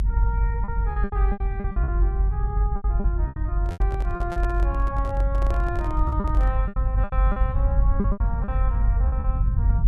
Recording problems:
low-frequency rumble; below 64 Hz, strongest tone 48 Hz, SNR -9 dB
packet loss; 13% of the sound replaced, filled with repeated pitch periods
handling noise; from 3.5 to 6.5 s; peak +1 dB vs average level

